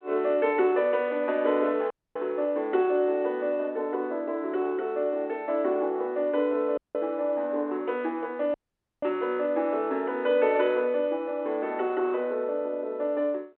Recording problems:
phone line; 260 Hz to 3.5 kHz, G.726
audio cutting out; at 2 s, at 7 s and at 8.5 s

